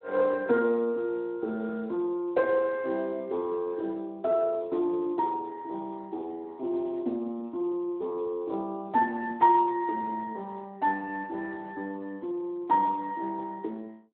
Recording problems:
phone line; 220 Hz to 2.6 kHz, Speex

